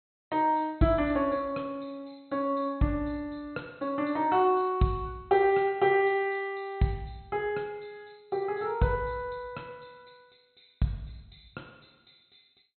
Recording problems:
low-pass filter; nothing above 4.1 kHz

